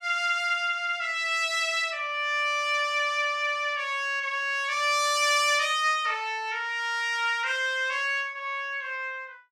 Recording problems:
none

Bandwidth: 15.5 kHz